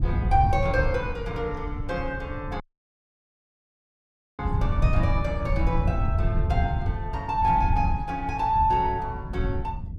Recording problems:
wind noise; below 110 Hz, SNR 1 dB
audio cutting out; at 2.5 s for 2 s

